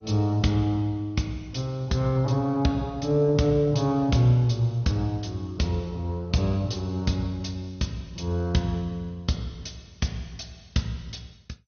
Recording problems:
codec artefacts; MP2, log-spectral distance 3 dB, nothing above 6.3 kHz

